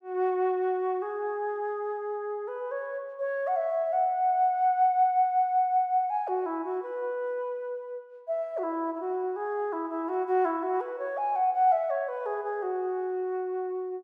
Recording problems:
none

